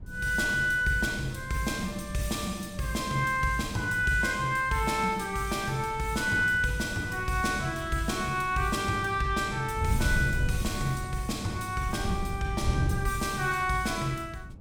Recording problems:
wind noise; below 120 Hz, SNR 10 dB

